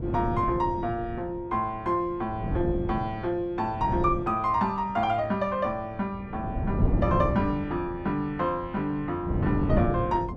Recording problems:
wind noise; below 240 Hz, SNR 3 dB

